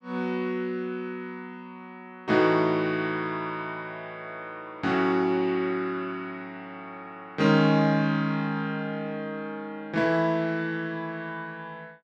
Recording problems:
none

